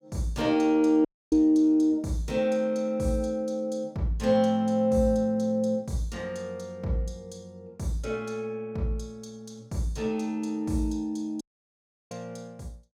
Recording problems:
dropout; at 1 s and at 11 s for 0.5 s

